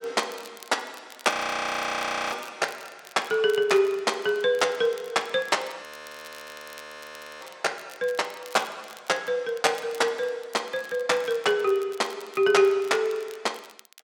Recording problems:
crackling; vinyl, SNR 23 dB
frozen audio; at 1.5 s for 1 s and at 6 s for 1.5 s

